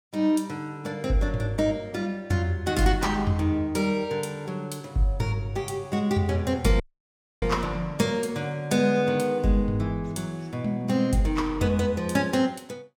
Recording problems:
audio cutting out; at 7 s for 0.5 s

